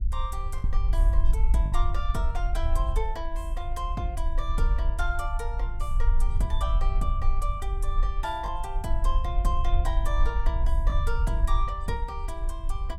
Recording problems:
rumble; below 48 Hz, SNR -6 dB
lost packets; 1.2% of the sound replaced, filled with the last packet

